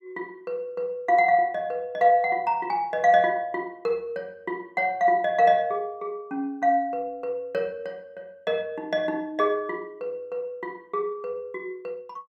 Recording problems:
none

